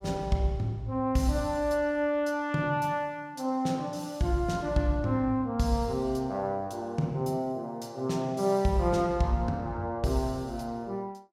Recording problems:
none

